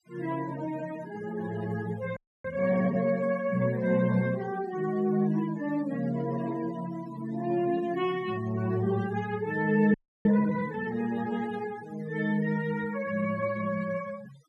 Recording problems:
denoising artefacts; signal-to-artefact ratio 18 dB
frozen audio; at 2 s and at 10 s

